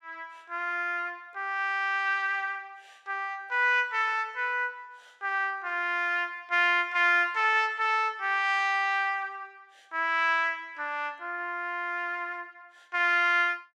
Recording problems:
none

